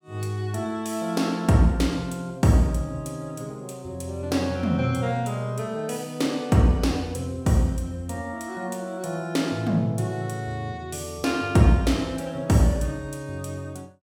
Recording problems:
none

